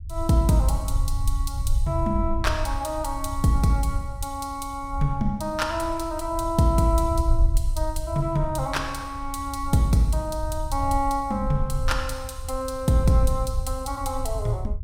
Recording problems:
rumble; below 68 Hz, SNR 6 dB

